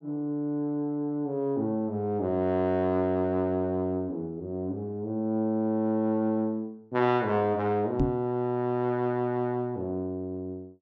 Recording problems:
treble missing; nothing above 8 kHz
knock on the microphone; at 8 s; peak +5 dB vs average level

